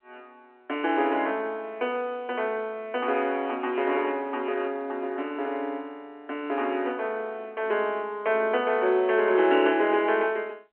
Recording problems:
phone line; 280 Hz to 3.3 kHz, G.711

